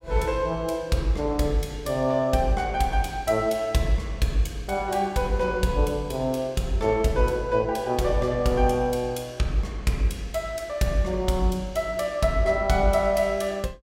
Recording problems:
none

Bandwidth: 16 kHz